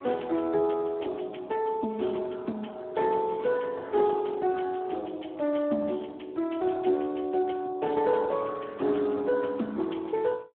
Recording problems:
phone line; 240 Hz to 2.2 kHz, Speex

